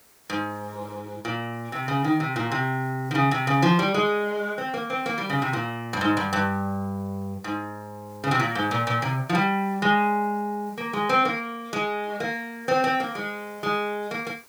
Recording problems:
hiss; slope -2 dB per octave, SNR 27 dB

